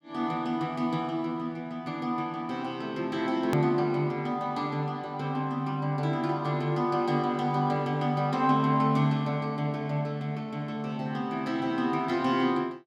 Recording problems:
click at an edit; at 3.5 s

